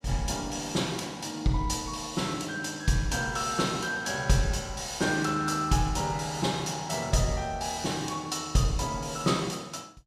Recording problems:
none

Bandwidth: 14.5 kHz